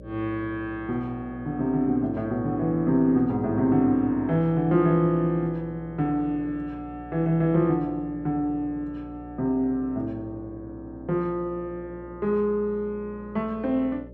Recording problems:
hum; 60 Hz, harmonics up to 600 Hz, SNR 18 dB

